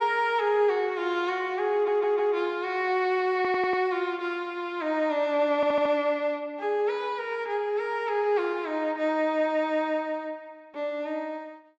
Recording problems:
audio stuttering; at 1.5 s, at 3.5 s and at 5.5 s

